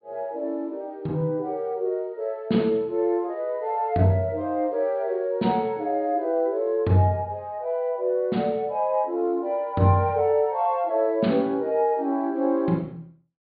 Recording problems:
low-pass filter; nothing above 4.6 kHz

